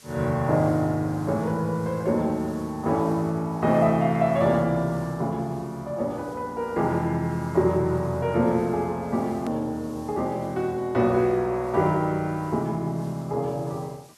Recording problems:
background hiss; SNR 27 dB
click at an edit; at 9.5 s

